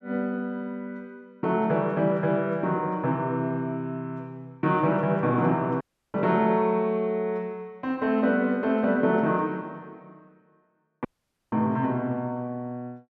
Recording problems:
audio cutting out; at 6 s and at 11 s

